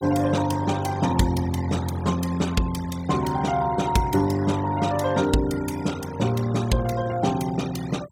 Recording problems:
noise reduction artefacts; signal-to-artefact ratio 17 dB

